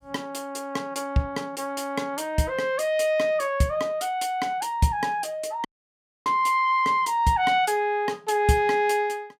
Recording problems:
audio cutting out; at 5.5 s for 0.5 s

